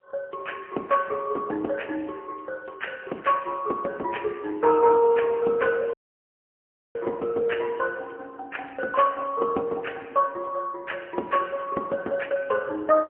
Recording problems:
telephone audio; 280 Hz to 3.7 kHz, AMR-NB, then MP3
audio cutting out; at 6 s for 1 s

